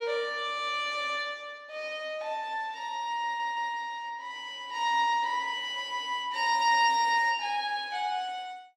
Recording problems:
audio stuttering; at 3 s

